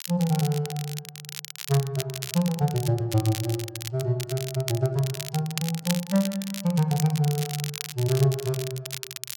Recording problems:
crackle; vinyl, SNR 9 dB

